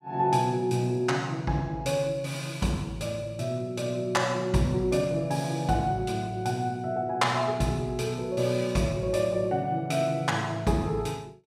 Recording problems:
none

